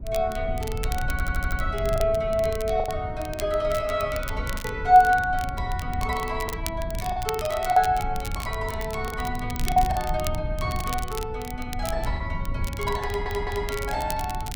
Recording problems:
rumble; below 98 Hz, SNR 8 dB
crackling; vinyl, SNR 13 dB
lost packets; 4% of the sound replaced, filled with the last packet
audio stuttering; at 1 s and at 13 s

